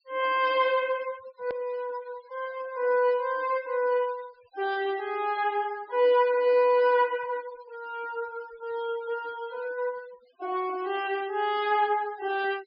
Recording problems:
low-pass filter; nothing above 5.5 kHz
denoising artefacts; signal-to-artefact ratio 23 dB
click at an edit; at 1.5 s

